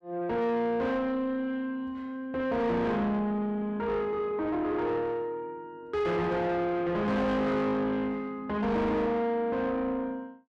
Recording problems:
distortion; soft clipping, signal-to-distortion ratio 7 dB

